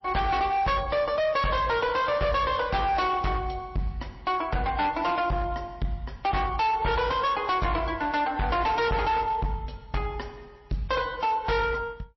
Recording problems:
lossy compression; MP3, log-spectral distance 2 dB, nothing above 5.7 kHz
distorted audio; hard clipping, uneven, signal-to-distortion ratio 7 dB

